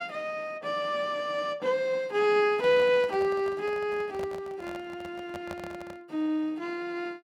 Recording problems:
handling noise; from 2.5 to 6 s; peak -7 dB vs average level

